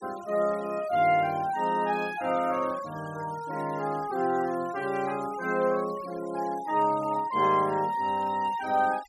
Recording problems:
noise reduction artefacts; signal-to-artefact ratio 21 dB

